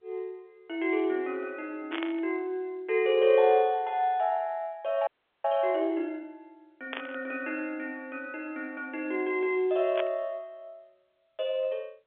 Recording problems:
telephone audio; 320 Hz to 3.4 kHz, G.711
static burst; at 2 s, at 7 s and at 10 s; peak -3 dB vs average level
frozen audio; at 5 s

